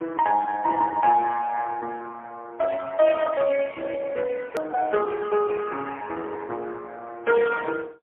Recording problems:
phone line; 240 Hz to 2.8 kHz, AMR-NB, then MP3
edit click; at 4.5 s

